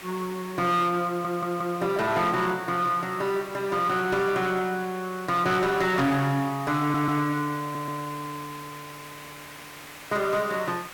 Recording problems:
distortion; hard clipping, uneven, signal-to-distortion ratio 12 dB
hiss; SNR 16 dB
stutter; at 1 s, at 7 s and at 7.5 s

